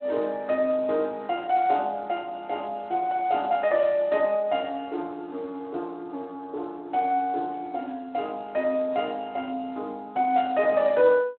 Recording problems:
telephone audio; 280 Hz to 3.5 kHz, Speex

